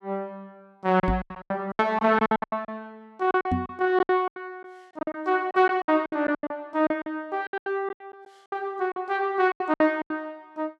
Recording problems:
packet loss; 18% of the sound replaced, filled with silence
microphone bump; at 1 s and at 3.5 s; peak +3 dB vs average level

